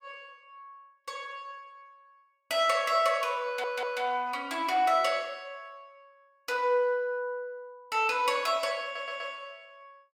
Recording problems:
stutter; at 3.5 s and at 9 s

